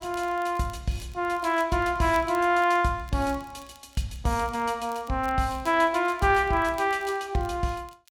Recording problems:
crackling; vinyl, SNR 27 dB

